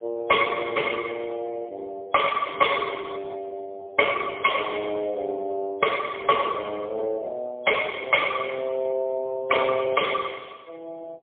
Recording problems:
phone line; 320 Hz to 3.3 kHz, AMR-NB, then MP3

